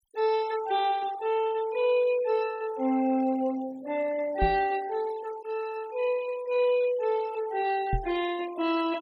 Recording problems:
denoising artefacts; signal-to-artefact ratio 19 dB
knock on the microphone; at 4.5 s and at 8 s; peak +2 dB vs average level

